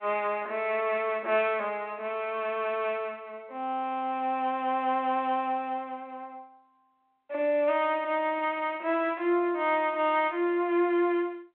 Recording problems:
phone line; 280 Hz to 3.4 kHz, G.726

